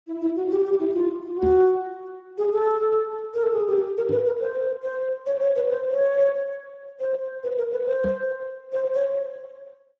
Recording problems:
lossy compression; Speex, log-spectral distance 2 dB
microphone thump; at 1.5 s, at 4 s and at 8 s; peak -3 dB vs average level

